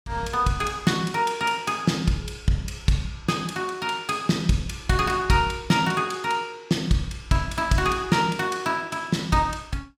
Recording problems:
none

